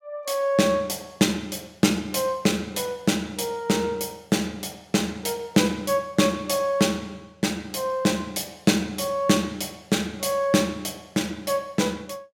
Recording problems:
none

